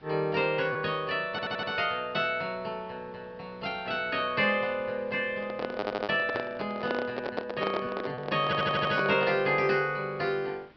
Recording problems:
treble cut off; nothing above 5.5 kHz
hiss; SNR 27 dB
lost packets; 1.1% of the sound replaced, filled with repeated pitch periods
stutter; at 1.5 s, at 6 s and at 8.5 s
handling noise; from 5.5 to 9.5 s; peak +1 dB vs average level

